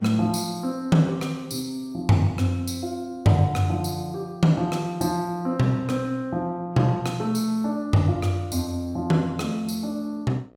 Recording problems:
mains hum; 60 Hz, harmonics up to 2 kHz, SNR 32 dB

